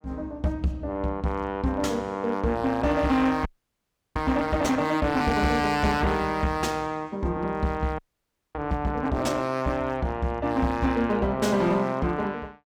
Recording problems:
distorted audio; hard clipping, signal-to-distortion ratio 11 dB
frozen audio; at 3.5 s for 0.5 s and at 8 s for 0.5 s

